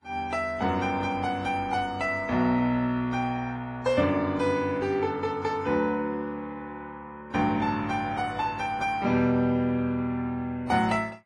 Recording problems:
lossy codec; Vorbis, then AAC, log-spectral distance 2 dB, nothing above 13.8 kHz

